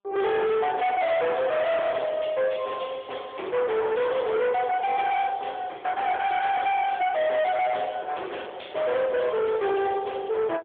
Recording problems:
telephone audio; 860 Hz to 2.8 kHz, AMR-NB
distortion; hard clipping, uneven, signal-to-distortion ratio 5 dB

